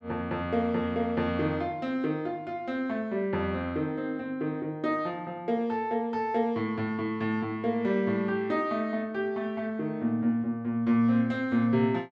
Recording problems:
none

